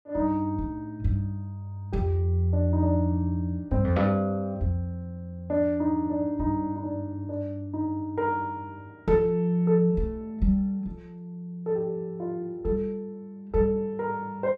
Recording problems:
none

